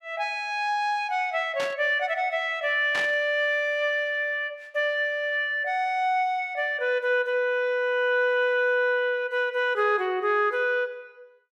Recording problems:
burst of static; at 1.5 s and at 3 s; peak -3 dB vs average level

